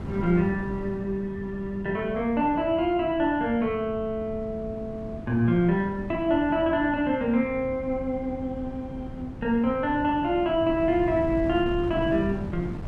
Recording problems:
wind noise; below 250 Hz, SNR 12 dB

